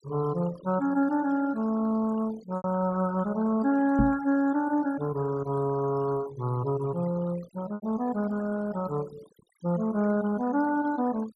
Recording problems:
noise reduction artefacts; signal-to-artefact ratio 18 dB
lost packets; 1.6% of the sound replaced, filled with repeated pitch periods
knock on the microphone; at 4 s; peak +7 dB vs average level

